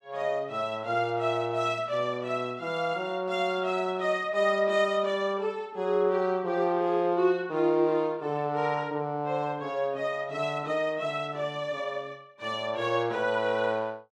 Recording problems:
none

